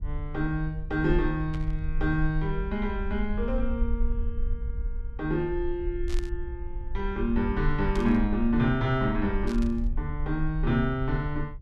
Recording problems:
rumble; below 52 Hz, SNR 6 dB
burst of static; 4 times, first at 1.5 s; peak -9 dB vs average level

